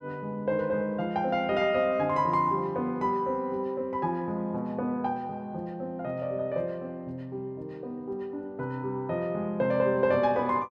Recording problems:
none

